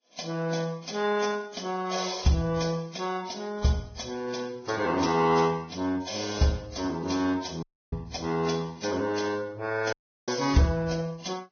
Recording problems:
lossy codec; Vorbis, then AAC, log-spectral distance 5 dB, nothing above 6.3 kHz
audio cutting out; at 7.5 s and at 10 s

